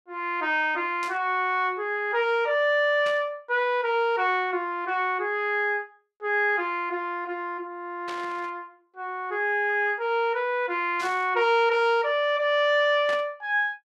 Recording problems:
burst of static; 5 times, first at 1 s; peak -9 dB vs average level

